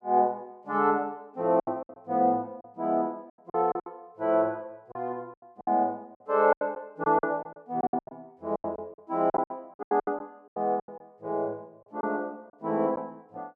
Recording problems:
lost packets; 13% of the sound replaced, filled with silence

